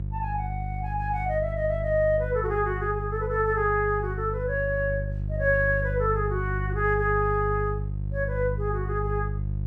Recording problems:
mains hum; 50 Hz, harmonics up to 350 Hz, SNR 4 dB

